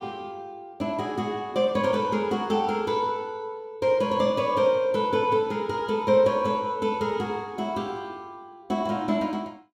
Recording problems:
none

